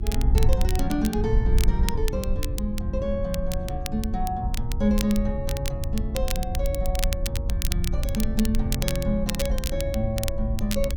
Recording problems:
hum; 50 Hz, harmonics up to 350 Hz, SNR 14 dB
wind noise; below 66 Hz, SNR 0 dB
crackling; vinyl, SNR 7 dB

